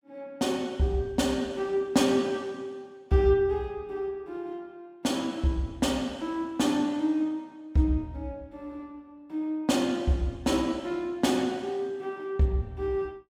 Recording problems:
none

